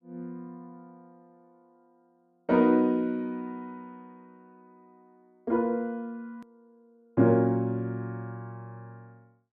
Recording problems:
edit click; at 6.5 s

